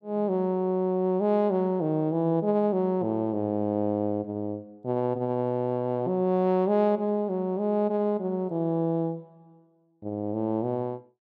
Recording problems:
none

